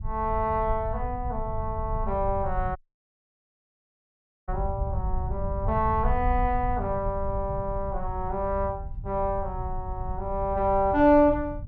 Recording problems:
low-frequency rumble; below 88 Hz, SNR 7 dB
audio cutting out; at 3 s for 1.5 s

